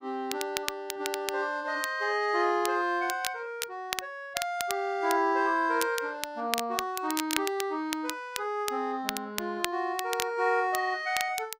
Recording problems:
crackling; vinyl, SNR 7 dB

